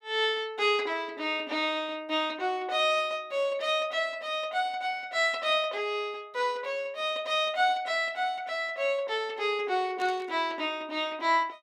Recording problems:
burst of static; at 10 s; peak -12 dB vs average level

